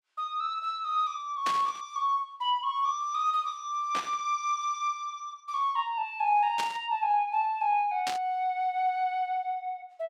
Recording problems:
static burst; 4 times, first at 1.5 s; peak -1 dB vs average level

